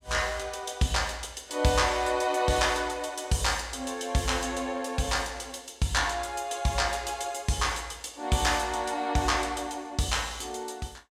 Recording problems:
none

